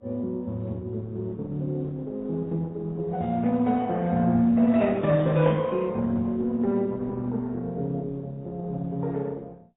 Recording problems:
lossy codec; Opus, then AAC, log-spectral distance 2 dB, nothing above 3.7 kHz

